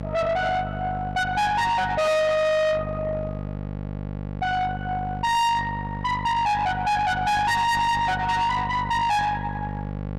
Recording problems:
distorted audio; soft clipping, signal-to-distortion ratio 7 dB
hum; 50 Hz, harmonics up to 1.4 kHz, SNR 9 dB

